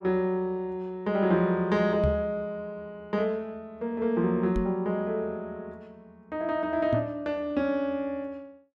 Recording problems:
microphone bump; at 2 s, at 4.5 s and at 7 s; peak +4 dB vs average level

